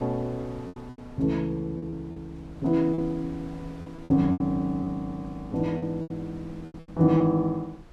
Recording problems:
wind on the microphone; below 470 Hz, SNR 20 dB
lost packets; 10% of the sound replaced, filled with repeated pitch periods

